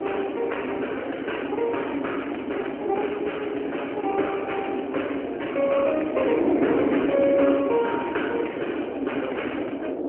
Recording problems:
phone line; 240 Hz to 3.1 kHz, AMR-NB
wind on the microphone; below 520 Hz, SNR 2 dB

